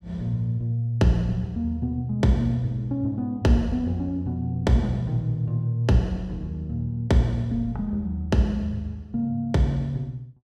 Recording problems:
none

